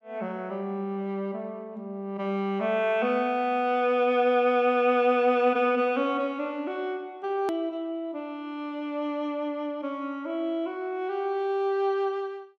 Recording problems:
hard cut with a click; at 7.5 s

